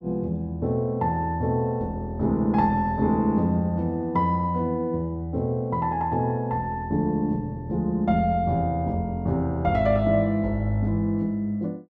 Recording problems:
none

